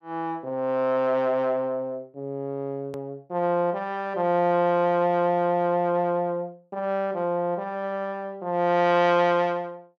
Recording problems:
hard cut with a click; at 3 s

